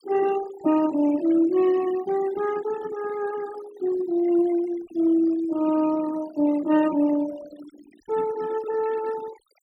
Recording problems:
denoising artefacts; signal-to-artefact ratio 19 dB

